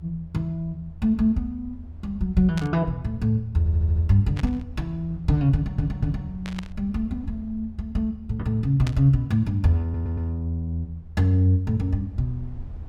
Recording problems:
rumble; below 80 Hz, strongest tone 78 Hz, SNR 17 dB
burst of static; 4 times, first at 2.5 s; peak -7 dB vs average level
audio stuttering; at 3.5 s, at 5.5 s and at 10 s

